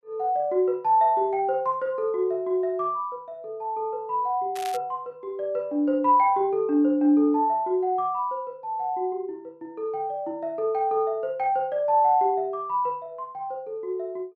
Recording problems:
crackle; at 4.5 s; loose cable, SNR 17 dB

